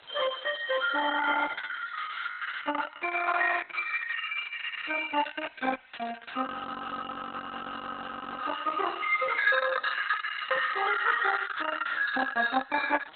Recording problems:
lossy compression; MP3, then Opus, log-spectral distance 9 dB, nothing above 3.8 kHz
background hiss; SNR 21 dB
frozen audio; at 6.5 s for 2 s

